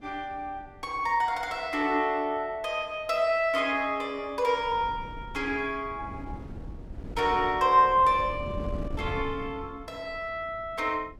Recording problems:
wind noise; below 220 Hz, SNR 14 dB

